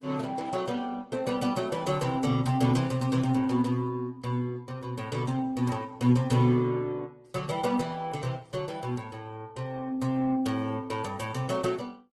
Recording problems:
lossy compression; MP3, then Opus, log-spectral distance 3 dB, nothing above 12 kHz

